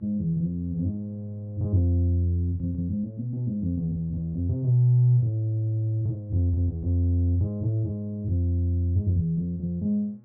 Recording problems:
electrical hum; 60 Hz, harmonics up to 840 Hz, SNR 29 dB

